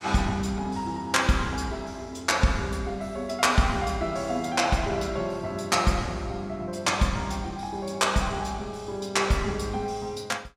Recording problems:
none

